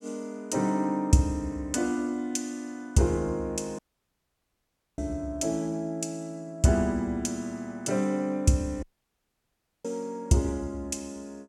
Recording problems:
dropout; at 4 s for 1 s and at 9 s for 1 s

